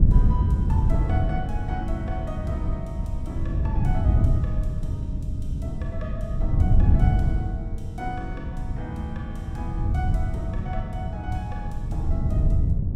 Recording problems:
wind noise; below 120 Hz, SNR -10 dB

